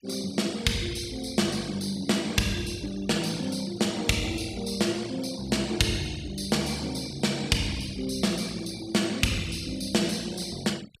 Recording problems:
denoising artefacts; signal-to-artefact ratio 18 dB

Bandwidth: 15 kHz